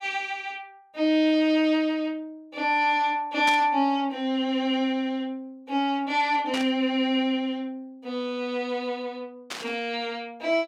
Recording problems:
static burst; at 3.5 s, at 6.5 s and at 9.5 s; peak -1 dB vs average level

